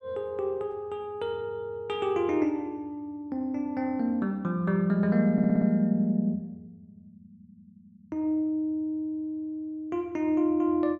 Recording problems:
stutter; at 5.5 s

